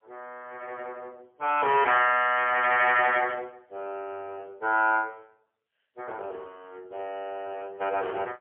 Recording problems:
phone line; 370 Hz to 3.2 kHz, AMR-NB, then MP3

